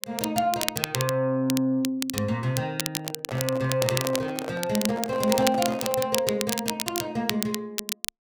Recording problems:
crackle; vinyl, SNR 4 dB
handling noise; from 3 to 6 s; peak -3 dB vs average level

